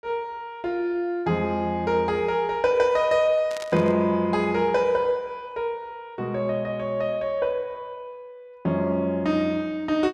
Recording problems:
static burst; at 3.5 s; peak -9 dB vs average level

